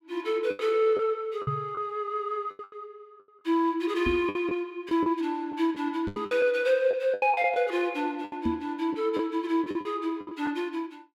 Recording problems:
packet loss; 10% of the sound replaced, filled with the last packet
microphone thump; 4 times, first at 1.5 s; peak +2 dB vs average level

